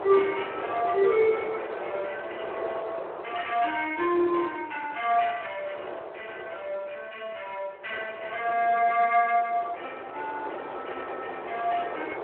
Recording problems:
phone line; 320 Hz to 3.3 kHz, Speex
wind noise; below 960 Hz, SNR 9 dB

